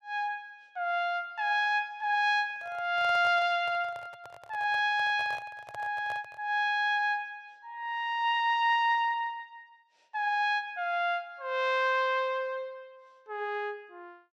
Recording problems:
handling noise; from 2.5 to 6.5 s; peak -11 dB vs average level

